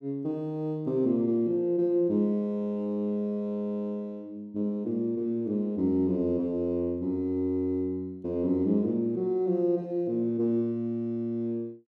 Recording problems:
none

